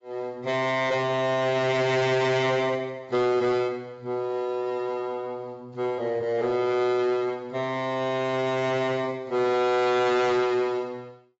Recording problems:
lossy compression; AAC, log-spectral distance 2 dB, nothing above 7.6 kHz
distortion; hard clipping, signal-to-distortion ratio 10 dB

